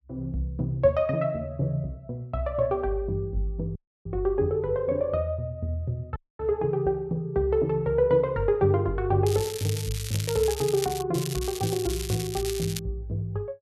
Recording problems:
audio cutting out; at 4 s and at 6 s
crackle; from 9.5 to 11 s and from 11 to 13 s; loose cable, SNR 9 dB

